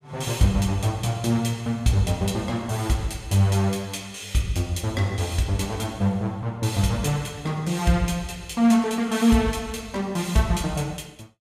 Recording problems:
none

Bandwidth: 15.5 kHz